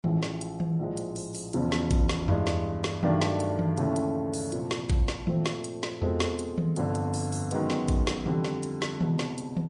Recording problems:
lossy codec; MP3, log-spectral distance 3 dB

